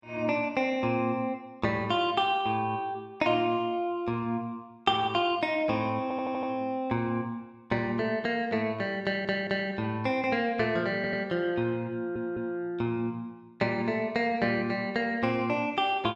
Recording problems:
audio stuttering; 4 times, first at 6 s

